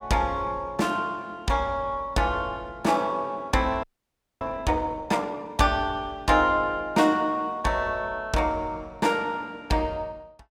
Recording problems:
audio freezing; at 4 s for 0.5 s

